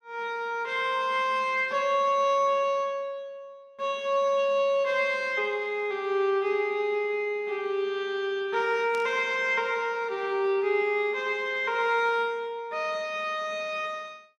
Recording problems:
static burst; at 9 s; peak -12 dB vs average level

